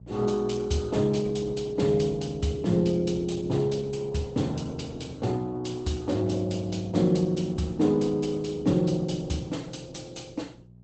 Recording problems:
lossy codec; Opus, log-spectral distance 4 dB, nothing above 8 kHz
hum; 60 Hz, harmonics up to 420 Hz, SNR 20 dB

